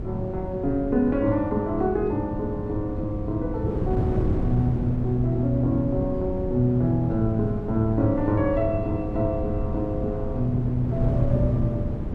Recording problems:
wind on the microphone; below 220 Hz, SNR 5 dB

